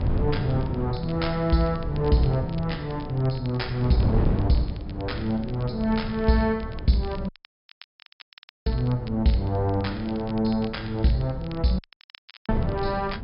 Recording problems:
treble cut off; nothing above 5.5 kHz
wind noise; below 190 Hz, SNR 6 dB
crackle; vinyl, SNR 23 dB
audio cutting out; at 7.5 s for 1.5 s and at 12 s for 0.5 s

